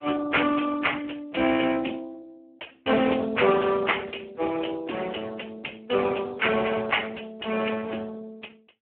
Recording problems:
phone line; 260 Hz to 3.2 kHz, Speex

